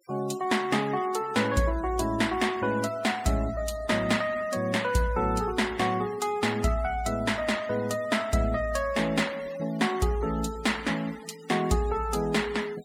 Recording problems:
denoising artefacts; signal-to-artefact ratio 19 dB

